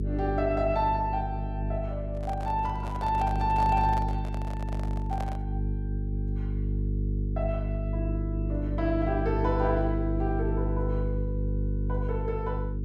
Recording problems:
hum; 50 Hz, harmonics up to 450 Hz, SNR 0 dB
handling noise; from 2 to 5.5 s; peak -4 dB vs average level

